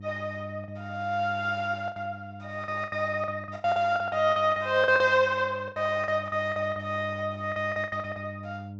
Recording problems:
low-pass filter; nothing above 8 kHz
hum; 50 Hz, harmonics up to 600 Hz, SNR 15 dB
packet loss; 13% of the sound replaced, filled with the last packet

